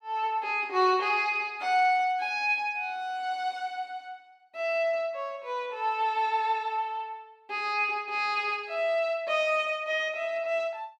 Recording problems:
none

